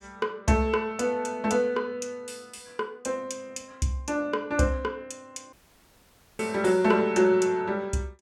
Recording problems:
dropout; at 5.5 s for 1 s

